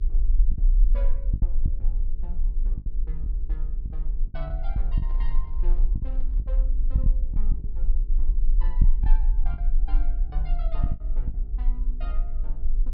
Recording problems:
treble missing; nothing above 5.5 kHz
mains hum; 60 Hz, harmonics up to 420 Hz, SNR 2 dB
rumble; below 40 Hz, strongest tone 20 Hz, SNR -18 dB
packet loss; 7% of the sound replaced, filled with the last packet
microphone handling noise; from 5 to 6.5 s; peak -2 dB vs average level

